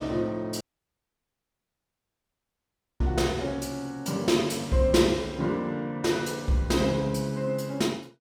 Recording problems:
audio cutting out; at 0.5 s for 2.5 s

